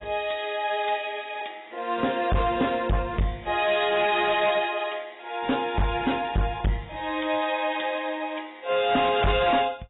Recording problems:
lossy codec; AAC, log-spectral distance 5 dB, nothing above 3.8 kHz
distortion; hard clipping, signal-to-distortion ratio 8 dB

